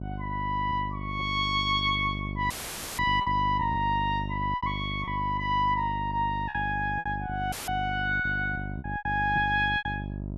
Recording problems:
hum; 50 Hz, harmonics up to 700 Hz, SNR 8 dB
packet loss; 7% of the sound replaced, filled with repeated pitch periods
audio cutting out; at 2.5 s and at 7.5 s

